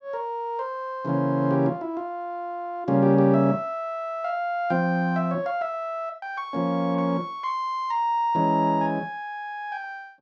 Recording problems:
none

